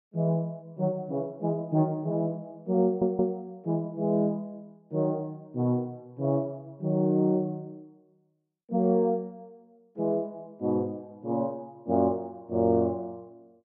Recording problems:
stutter; at 3 s

